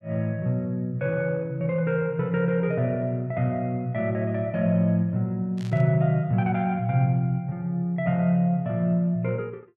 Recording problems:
static burst; at 5.5 s; peak -16 dB vs average level

